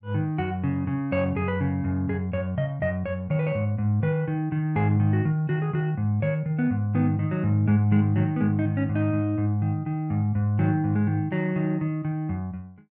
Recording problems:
none

